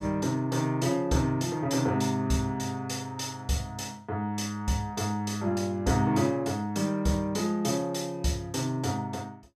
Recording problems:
none

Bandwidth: 14.5 kHz